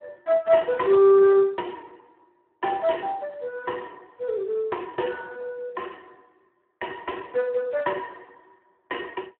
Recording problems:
phone line; 300 Hz to 2.8 kHz, Speex

